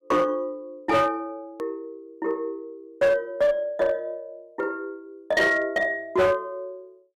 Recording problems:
distortion; hard clipping, uneven, signal-to-distortion ratio 11 dB
hard cut with a click; at 1.5 s

